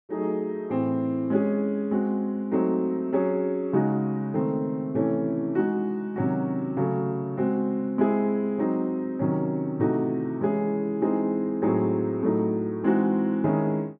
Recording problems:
none

